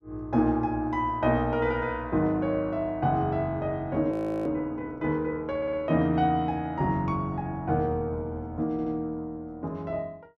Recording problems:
frozen audio; at 4 s
stutter; at 5.5 s and at 8.5 s

